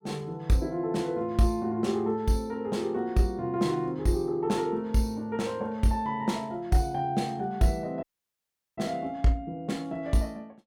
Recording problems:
dropout; at 8 s for 0.5 s

